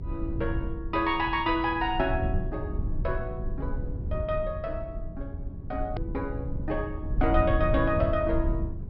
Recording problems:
treble cut off; nothing above 5.4 kHz
electrical hum; 50 Hz, harmonics up to 400 Hz, SNR 20 dB
low-frequency rumble; below 110 Hz, SNR 4 dB
click at an edit; at 6 s

